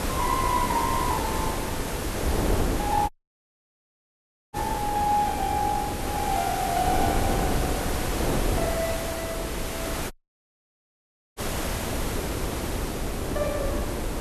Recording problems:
hiss; slope -3 dB per octave, SNR 4 dB
wind noise; below 450 Hz, SNR 2 dB
audio cutting out; at 3 s for 1.5 s and at 10 s for 1.5 s

